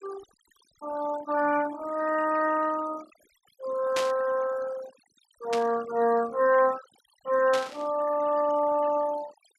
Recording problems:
denoising artefacts; signal-to-artefact ratio 17 dB
static burst; at 4 s, at 5.5 s and at 7.5 s; peak -1 dB vs average level

